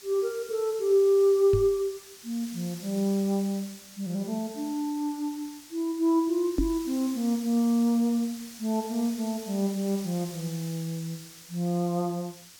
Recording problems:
hiss; SNR 17 dB
knock on the microphone; at 1.5 s and at 6.5 s; peak +4 dB vs average level

